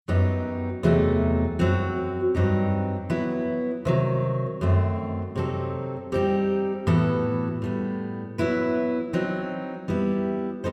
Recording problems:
none

